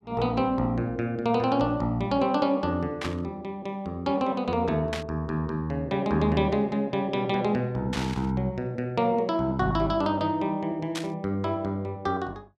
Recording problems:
static burst; 4 times, first at 3 s; peak -2 dB vs average level

